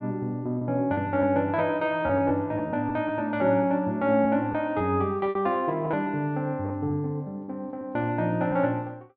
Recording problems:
packet loss; 5% of the sound replaced, filled with repeated pitch periods

